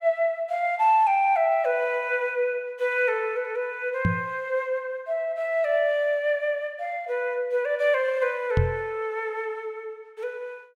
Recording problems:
microphone bump; at 4 s and at 8.5 s; peak +6 dB vs average level

